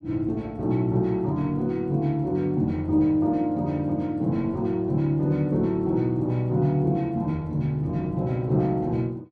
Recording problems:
none

